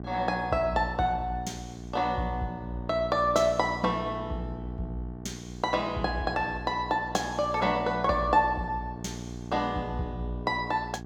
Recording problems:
hum; 60 Hz, harmonics up to 1.1 kHz, SNR 11 dB

